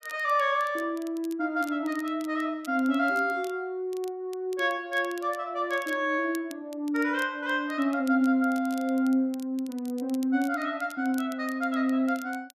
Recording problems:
crackling; vinyl, SNR 23 dB

